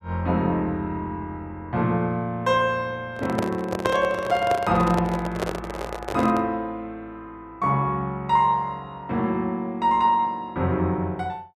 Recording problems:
handling noise; from 3 to 6.5 s; peak +3 dB vs average level

